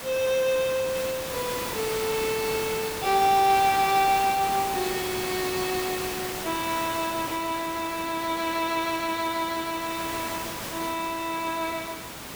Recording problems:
hiss; slope -3 dB per octave, SNR 6 dB

